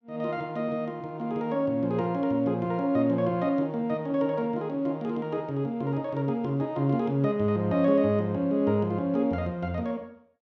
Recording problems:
none

